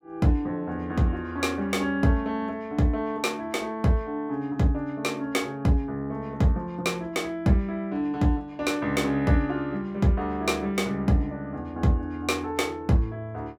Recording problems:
none

